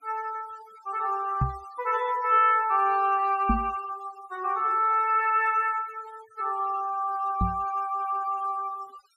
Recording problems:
noise reduction artefacts; signal-to-artefact ratio 23 dB
microphone bump; at 1.5 s, at 3.5 s and at 7.5 s; peak +3 dB vs average level

